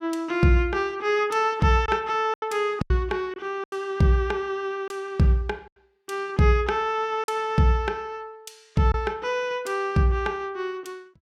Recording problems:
lost packets; 4% of the sound replaced, filled with silence

